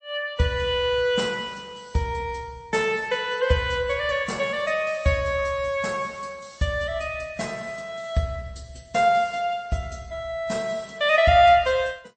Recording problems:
lossy compression; MP3, log-spectral distance 3 dB, nothing above 8.2 kHz

